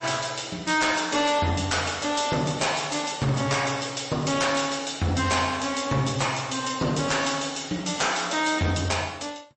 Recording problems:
codec artefacts; MP3, log-spectral distance 9 dB, nothing above 8 kHz
distorted audio; hard clipping, uneven, signal-to-distortion ratio 11 dB

